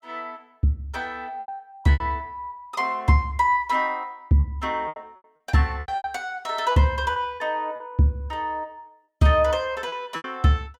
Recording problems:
packet loss; 8% of the sound replaced, filled with repeated pitch periods

